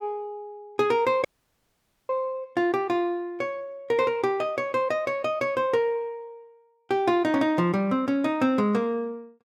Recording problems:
audio cutting out; at 1.5 s for 1 s

